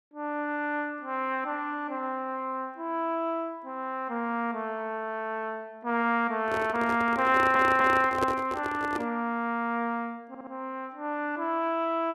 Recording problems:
microphone handling noise; from 6.5 to 9 s; peak +2 dB vs average level
stutter; at 7.5 s and at 10 s

